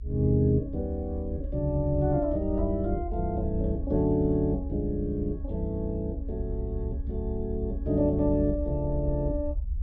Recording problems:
rumble; below 72 Hz, SNR 7 dB

